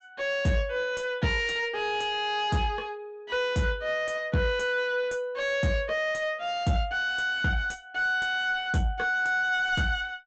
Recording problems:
low-pass filter; nothing above 8 kHz
distorted audio; soft clipping, signal-to-distortion ratio 8 dB

